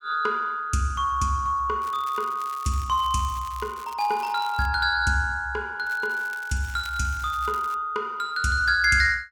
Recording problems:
crackle; from 2 to 4.5 s and from 6 to 7.5 s; loose cable, SNR 22 dB

